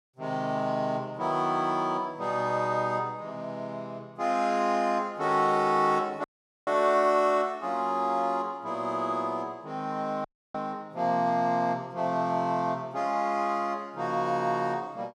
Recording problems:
audio cutting out; at 6 s and at 10 s

